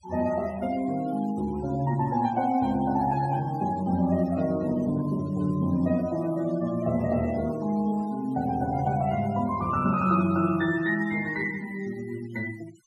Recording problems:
denoising artefacts; signal-to-artefact ratio 21 dB

